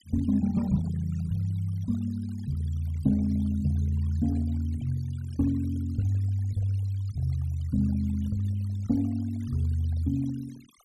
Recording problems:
noise reduction artefacts; signal-to-artefact ratio 23 dB

